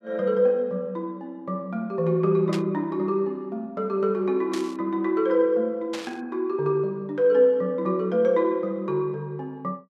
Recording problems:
burst of static; at 2.5 s, at 4.5 s and at 6 s; peak -6 dB vs average level

